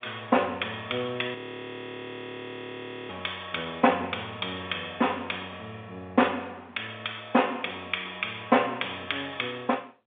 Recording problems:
telephone audio; 190 Hz to 3.6 kHz, G.711
audio freezing; at 1.5 s for 1.5 s

